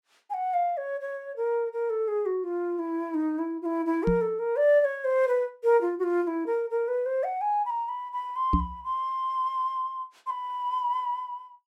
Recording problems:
knock on the microphone; at 4 s and at 8.5 s; peak +7 dB vs average level

